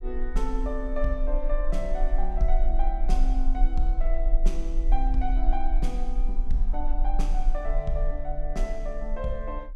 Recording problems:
low-frequency rumble; below 34 Hz, strongest tone 22 Hz, SNR -4 dB

